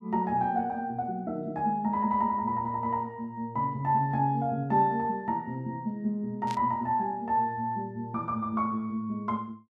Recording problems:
burst of static; at 6.5 s; peak -8 dB vs average level

